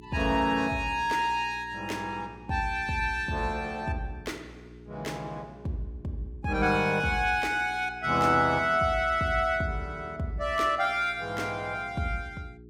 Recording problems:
mains hum; 60 Hz, harmonics up to 420 Hz, SNR 21 dB

